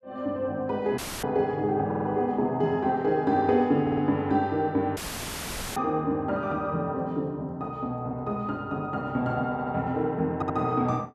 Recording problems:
audio cutting out; at 1 s and at 5 s for 1 s; filled with static
stutter; 4 times, first at 2 s

